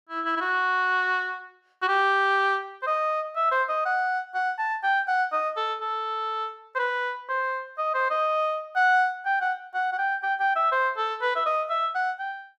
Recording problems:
none

